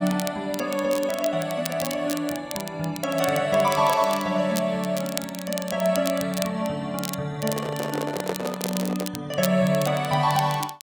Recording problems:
crackling; vinyl, SNR 10 dB
microphone handling noise; from 7.5 to 9 s; peak +2 dB vs average level

